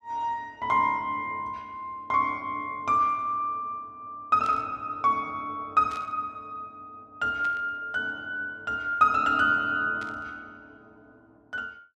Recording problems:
static burst; 4 times, first at 4.5 s; peak -13 dB vs average level

